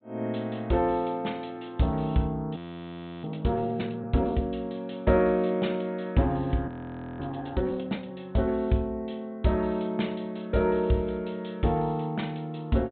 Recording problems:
treble cut off; nothing above 4 kHz
audio freezing; at 2.5 s for 0.5 s and at 6.5 s for 0.5 s

